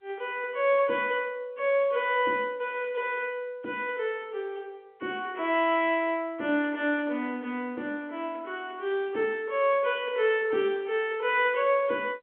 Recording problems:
telephone audio; 260 Hz to 3.4 kHz, G.711

